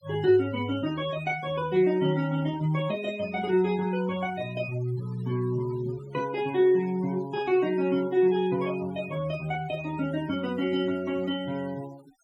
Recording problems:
denoising artefacts; signal-to-artefact ratio 20 dB

